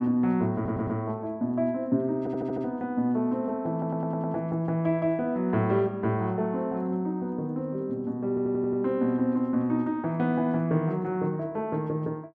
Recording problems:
stutter; 4 times, first at 0.5 s

